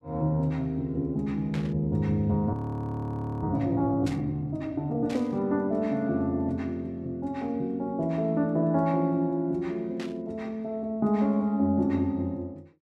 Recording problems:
static burst; 4 times, first at 1.5 s; peak -8 dB vs average level
frozen audio; at 2.5 s for 1 s

